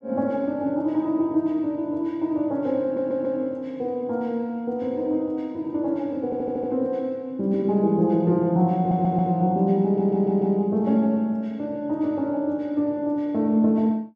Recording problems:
stutter; 4 times, first at 3 s

